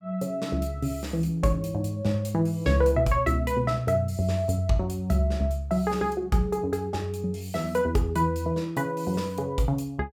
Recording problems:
none

